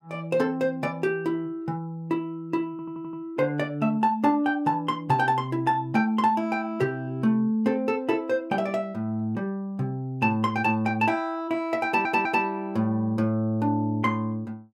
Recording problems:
audio stuttering; at 2.5 s and at 12 s

